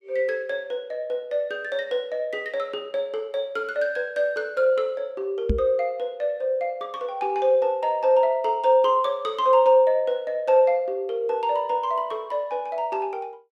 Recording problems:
microphone bump; at 5.5 s; peak +4 dB vs average level

